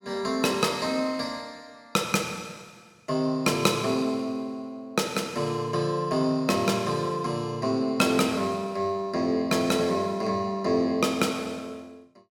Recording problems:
none

